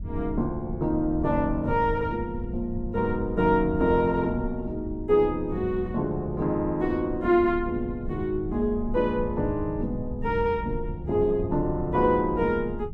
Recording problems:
rumble; below 100 Hz, SNR 11 dB

